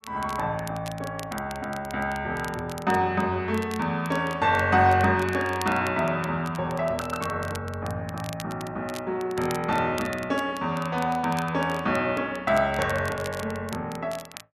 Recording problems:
crackle; vinyl, SNR 17 dB

